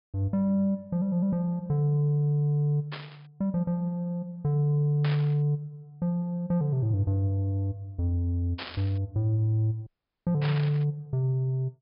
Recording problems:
treble cut off; nothing above 5.5 kHz
static burst; 4 times, first at 3 s; peak -5 dB vs average level
audio cutting out; at 10 s

